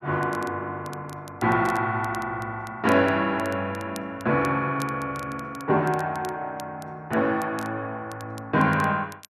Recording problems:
crackle; vinyl, SNR 22 dB

